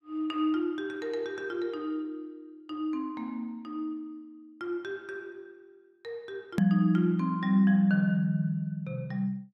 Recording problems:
click at an edit; at 6.5 s

